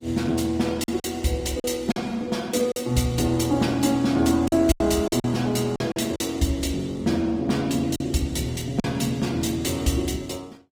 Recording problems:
codec artefacts; Opus, log-spectral distance 4 dB
lost packets; 6% of the sound replaced, filled with silence

